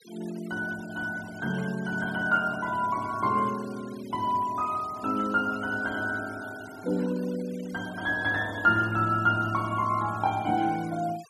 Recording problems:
noise reduction artefacts; signal-to-artefact ratio 20 dB

